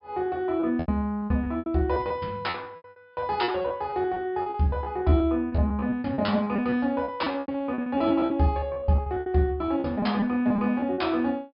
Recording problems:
low-pass filter; nothing above 5.1 kHz
packet loss; 18% of the sound replaced, filled with repeated pitch periods

